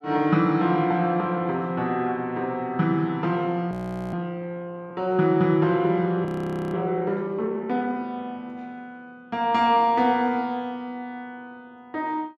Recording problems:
frozen audio; at 3.5 s and at 6.5 s

